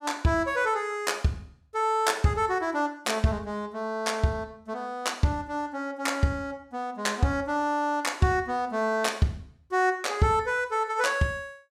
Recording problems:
none

